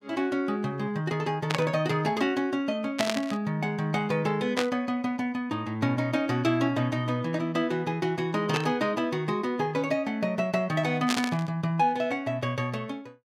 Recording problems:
static burst; 5 times, first at 1.5 s; peak +4 dB vs average level

